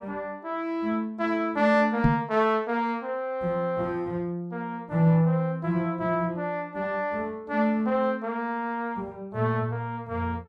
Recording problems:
microphone bump; at 2 s; peak +7 dB vs average level

